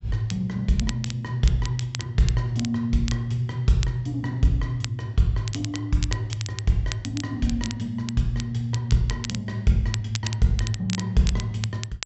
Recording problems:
treble cut off; nothing above 7.7 kHz
crackle; vinyl, SNR 12 dB

